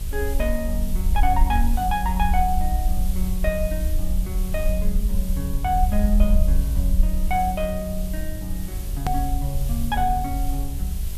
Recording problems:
hum; 50 Hz, harmonics up to 800 Hz, SNR 12 dB
hiss; slope +1 dB per octave, SNR 13 dB
rumble; below 58 Hz, SNR -1 dB
hard cut with a click; at 9 s

